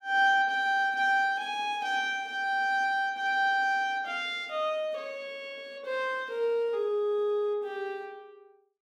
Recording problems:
none

